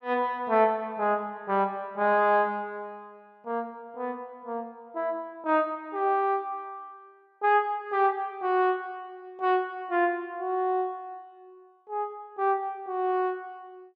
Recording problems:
none

